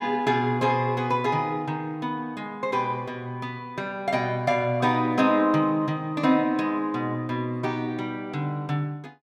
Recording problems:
none

